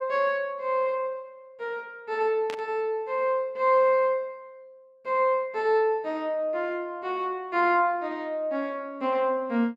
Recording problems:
burst of static; at 2.5 s; peak -7 dB vs average level

